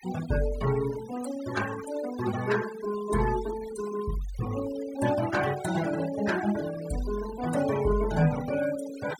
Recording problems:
noise reduction artefacts; signal-to-artefact ratio 13 dB

